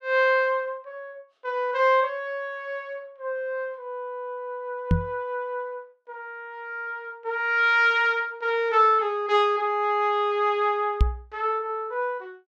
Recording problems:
microphone thump; at 5 s and at 11 s; peak +7 dB vs average level

